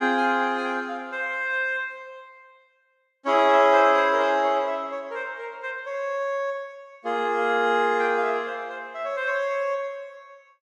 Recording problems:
none

